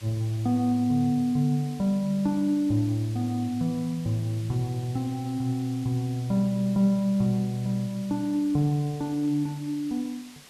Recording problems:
hiss; slope 0 dB per octave, SNR 21 dB

